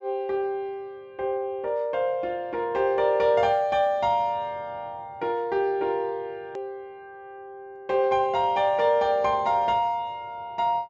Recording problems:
treble cut off; nothing above 7.7 kHz
edit click; at 6.5 s

